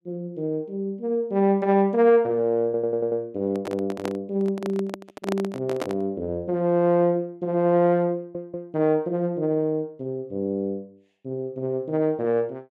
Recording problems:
audio stuttering; at 2.5 s and at 8 s
microphone handling noise; from 3.5 to 6 s; peak -1 dB vs average level

